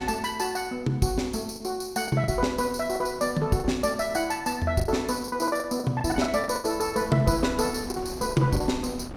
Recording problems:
wind noise; below 590 Hz, SNR 18 dB
packet loss; 9% of the sound replaced, filled with the last packet

